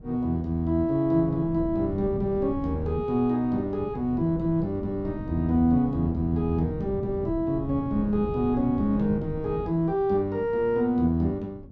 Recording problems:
wind noise; below 220 Hz, SNR 12 dB

